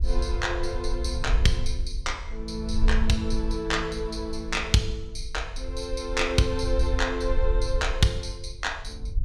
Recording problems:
wind on the microphone; below 56 Hz, SNR 4 dB

